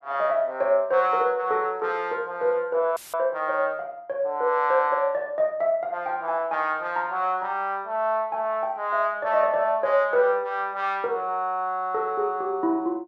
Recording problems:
dropout; at 3 s; filled with static

